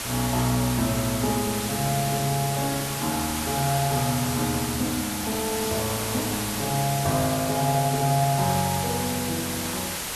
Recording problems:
background hiss; slope -1 dB per octave, SNR 3 dB
crackling; vinyl, SNR 27 dB

